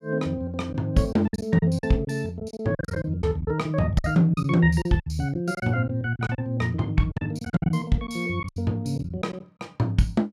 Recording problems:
lost packets; 11% of the sound replaced, filled with silence

